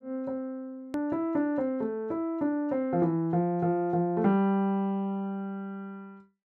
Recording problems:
edit click; at 1 s

